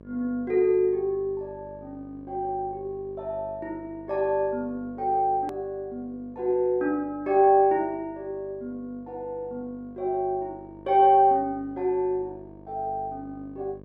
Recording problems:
mains hum; 50 Hz, harmonics up to 1.2 kHz, SNR 22 dB
hard cut with a click; at 5.5 s

